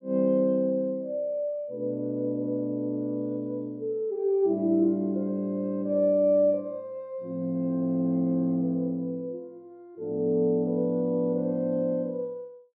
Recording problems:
none

